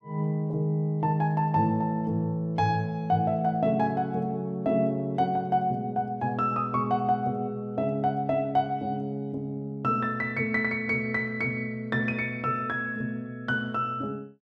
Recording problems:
none

